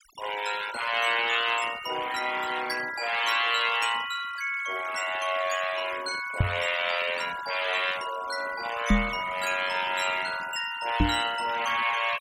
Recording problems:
denoising artefacts; signal-to-artefact ratio 14 dB
microphone bump; at 6.5 s, at 9 s and at 11 s; peak +8 dB vs average level

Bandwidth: 17 kHz